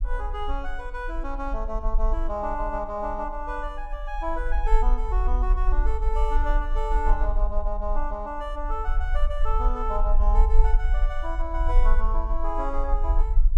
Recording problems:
rumble; below 42 Hz, strongest tone 20 Hz, SNR -4 dB

